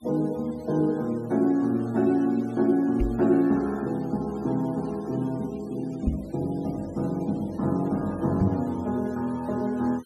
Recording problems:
noise reduction artefacts; signal-to-artefact ratio 25 dB
knock on the microphone; at 3 s, at 6 s and at 8.5 s; peak +6 dB vs average level

